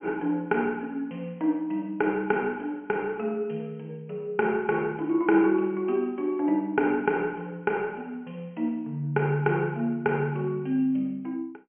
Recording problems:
treble cut off; nothing above 3 kHz

